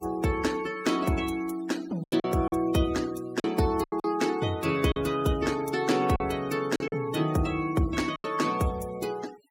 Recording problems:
noise reduction artefacts; signal-to-artefact ratio 19 dB
packet loss; 6% of the sound replaced, filled with silence

